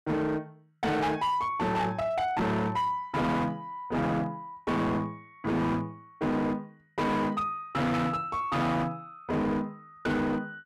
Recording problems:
distorted audio; hard clipping, uneven, signal-to-distortion ratio 7 dB

